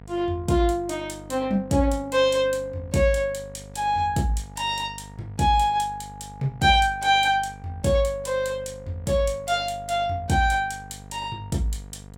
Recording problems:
electrical hum; 50 Hz, harmonics up to 1.4 kHz, SNR 19 dB

